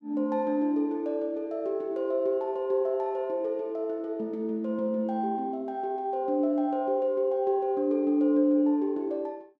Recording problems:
none

